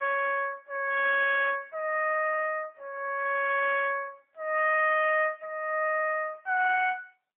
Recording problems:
phone line; 650 Hz to 2.2 kHz, AMR-NB, then MP3
distorted audio; hard clipping, uneven, signal-to-distortion ratio 11 dB

